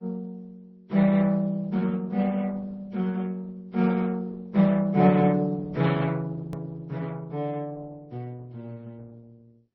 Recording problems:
codec artefacts; Opus, then MP3, log-spectral distance 2 dB
click at an edit; at 6.5 s

